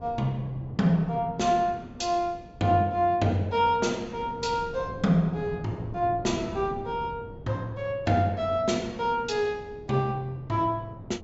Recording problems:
treble cut off; nothing above 8 kHz
wind noise; below 310 Hz, SNR 16 dB

